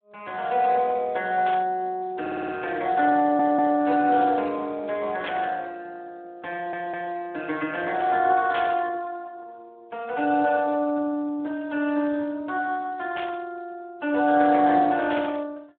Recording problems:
phone line; 240 Hz to 3.7 kHz, Speex
burst of static; 5 times, first at 1.5 s; peak -4 dB vs average level
stutter; at 2 s, at 3 s and at 6.5 s

